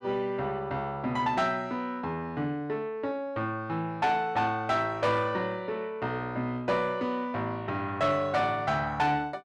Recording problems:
distorted audio; soft clipping, signal-to-distortion ratio 12 dB

